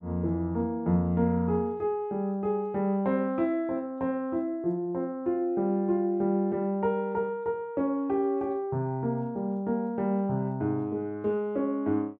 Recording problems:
none

